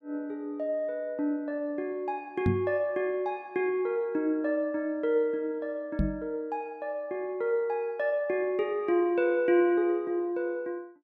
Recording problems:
knock on the microphone; at 2.5 s and at 6 s; peak +6 dB vs average level

